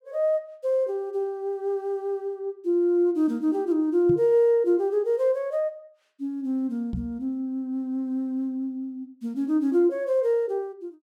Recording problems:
knock on the microphone; at 4 s and at 7 s; peak -1 dB vs average level

